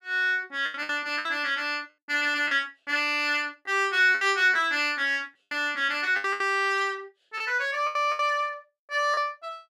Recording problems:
lost packets; 8% of the sound replaced, filled with the last packet

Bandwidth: 14.5 kHz